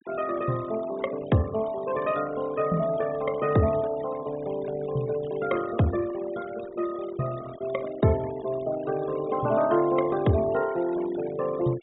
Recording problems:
treble missing; nothing above 4 kHz
denoising artefacts; signal-to-artefact ratio 16 dB

